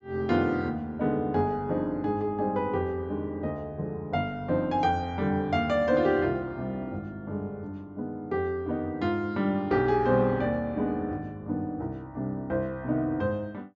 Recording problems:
low-pass filter; nothing above 8 kHz

